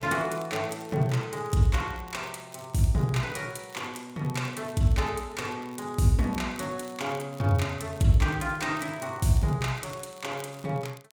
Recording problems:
crackling; vinyl, SNR 24 dB

